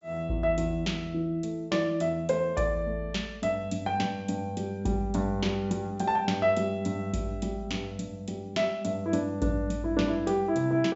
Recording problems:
treble missing; nothing above 8 kHz

